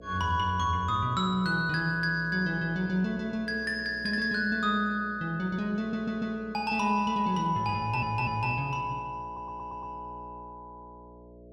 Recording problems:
electrical hum; 60 Hz, harmonics up to 660 Hz, SNR 19 dB
audio stuttering; at 6 s, at 8 s and at 9.5 s

